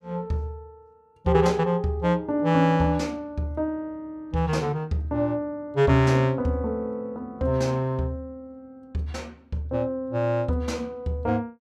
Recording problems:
none

